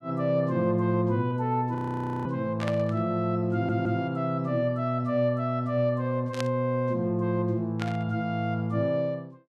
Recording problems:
frozen audio; at 2 s for 0.5 s
static burst; at 2.5 s, at 6.5 s and at 8 s; peak -3 dB vs average level
stutter; at 3.5 s

